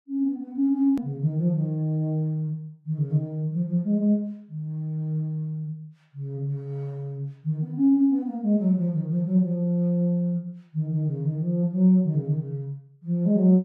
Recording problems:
click at an edit; at 1 s

